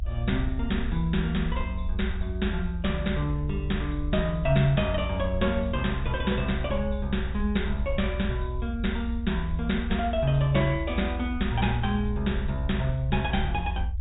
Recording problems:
treble cut off; nothing above 4 kHz
rumble; below 78 Hz, strongest tone 58 Hz, SNR 4 dB

